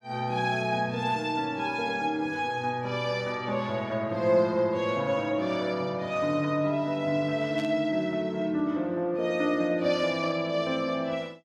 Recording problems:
static burst; at 7.5 s; peak -11 dB vs average level

